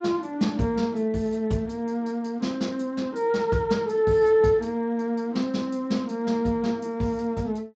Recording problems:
lossy compression; Speex, log-spectral distance 2 dB, nothing above 7.3 kHz

